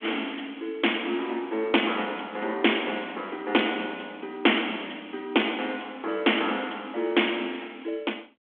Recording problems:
telephone audio; 240 Hz to 3.4 kHz, G.726

